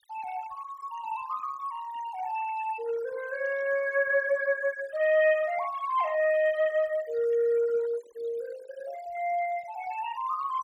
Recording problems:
noise reduction artefacts; signal-to-artefact ratio 19 dB

